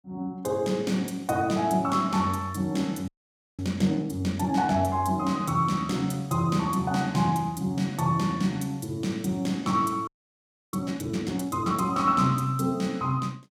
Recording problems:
audio freezing; at 3 s for 0.5 s and at 10 s for 0.5 s

